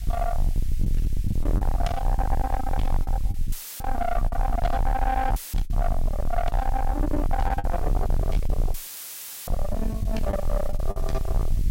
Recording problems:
distorted audio; soft clipping, signal-to-distortion ratio 6 dB
background hiss; SNR 21 dB
rumble; below 68 Hz, SNR -1 dB
packet loss; 7% of the sound replaced, filled with the last packet
audio cutting out; at 3.5 s, at 5.5 s and at 8.5 s for 0.5 s; filled with static

